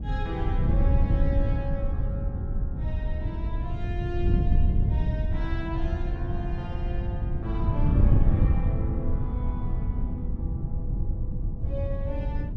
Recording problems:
wind noise; below 100 Hz, SNR -10 dB

